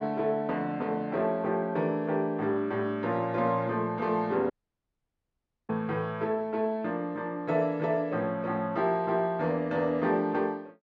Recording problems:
dropout; at 4.5 s for 1 s

